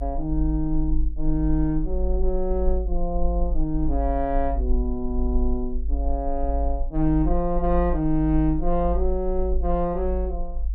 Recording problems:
rumble; below 50 Hz, strongest tone 22 Hz, SNR 2 dB

